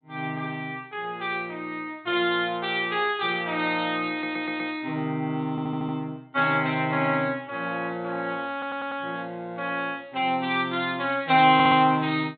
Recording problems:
low-pass filter; nothing above 4 kHz
stutter; 4 times, first at 4 s

